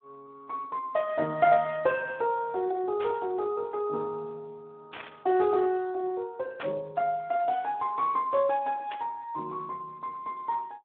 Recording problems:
phone line; 190 Hz to 3.1 kHz, Speex
burst of static; 4 times, first at 3 s; peak -4 dB vs average level

